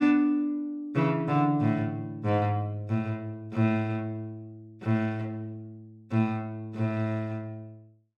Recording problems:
none

